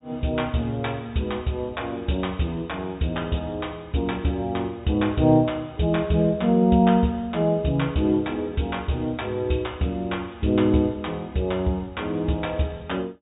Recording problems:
treble missing; nothing above 4 kHz

